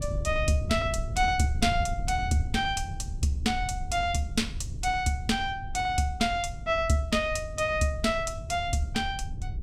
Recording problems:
wind noise; below 98 Hz, SNR 8 dB

